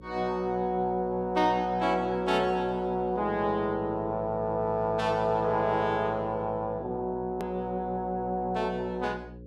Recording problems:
hum; 60 Hz, harmonics up to 540 Hz, SNR 18 dB
hard cut with a click; at 7.5 s

